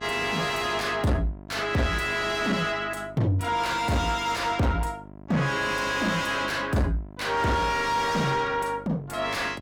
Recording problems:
distortion; soft clipping, signal-to-distortion ratio 7 dB
hum; 50 Hz, harmonics up to 1.4 kHz, SNR 19 dB

